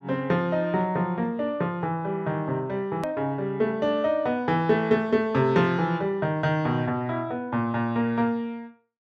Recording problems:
click at an edit; at 3 s

